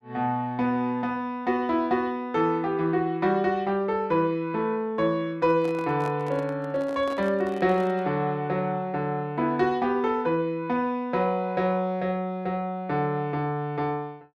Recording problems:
handling noise; from 5.5 to 8 s; peak -9 dB vs average level

